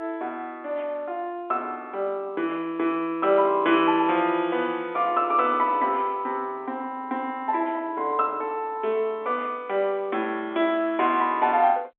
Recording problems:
telephone audio; 260 Hz to 3.6 kHz, G.711

